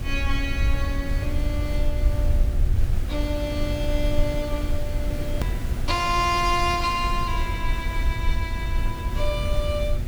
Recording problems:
hum; 60 Hz, harmonics up to 840 Hz, SNR 14 dB
hiss; SNR 8 dB
rumble; below 68 Hz, SNR 0 dB
edit click; at 5.5 s

